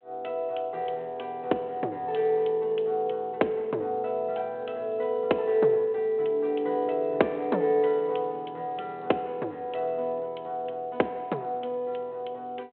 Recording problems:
telephone audio; 260 Hz to 3.4 kHz, G.726

